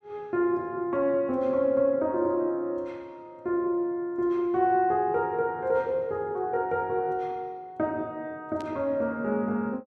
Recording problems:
static burst; at 8.5 s; peak -15 dB vs average level

